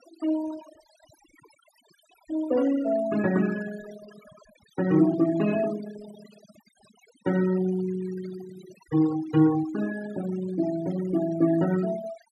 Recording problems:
denoising artefacts; signal-to-artefact ratio 15 dB

